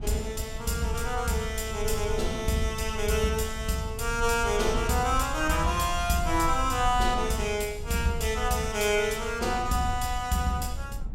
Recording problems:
low-frequency rumble; below 76 Hz, SNR 9 dB

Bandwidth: 16 kHz